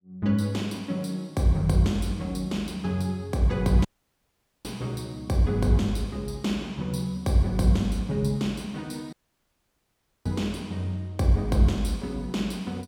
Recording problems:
audio cutting out; at 4 s for 1 s and at 9 s for 1 s

